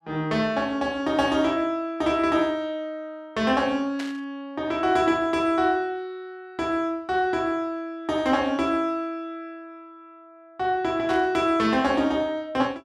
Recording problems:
static burst; at 4 s and at 11 s; peak -7 dB vs average level

